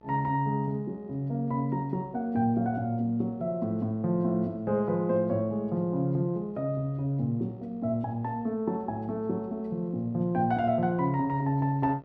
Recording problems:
hum; 60 Hz, harmonics up to 2 kHz, SNR 28 dB

